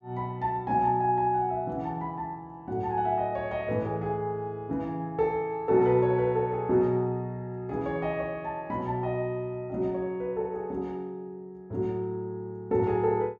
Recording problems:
none

